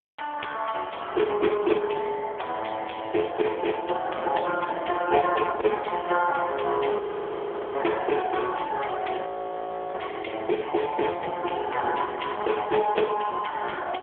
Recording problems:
phone line; 300 Hz to 3.4 kHz, AMR-NB
audio freezing; at 7 s for 1 s and at 9.5 s for 0.5 s

